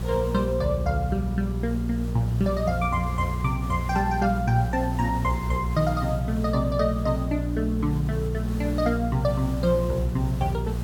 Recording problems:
hum; 60 Hz, harmonics up to 420 Hz, SNR 3 dB
hiss; slope -5 dB per octave, SNR 16 dB

